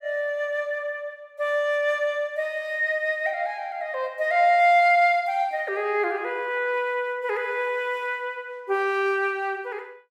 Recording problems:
none

